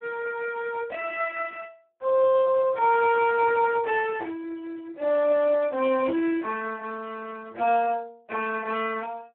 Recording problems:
phone line; 260 Hz to 3.1 kHz, Speex

